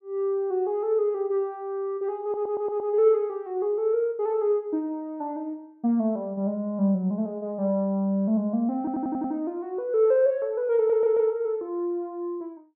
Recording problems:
stutter; at 2 s, at 9 s and at 11 s

